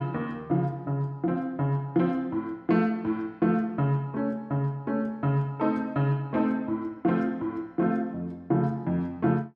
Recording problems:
none

